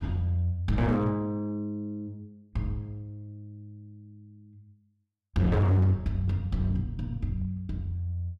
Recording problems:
distorted audio; hard clipping, uneven, signal-to-distortion ratio 10 dB

